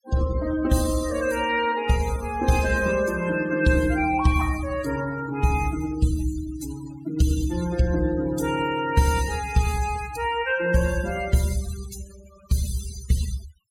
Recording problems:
noise reduction artefacts; signal-to-artefact ratio 15 dB

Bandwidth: 16.5 kHz